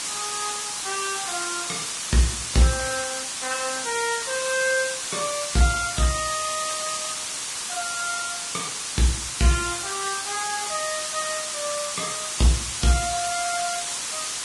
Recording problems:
lossy codec; Vorbis, log-spectral distance 18 dB, nothing above 10.4 kHz
hiss; slope +2 dB per octave, SNR 1 dB

